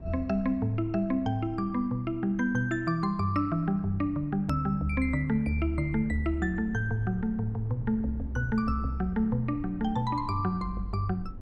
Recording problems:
rumble; below 130 Hz, SNR 16 dB
edit click; at 4.5 s

